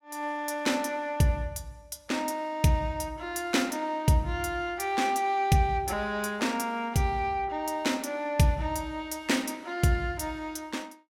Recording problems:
none

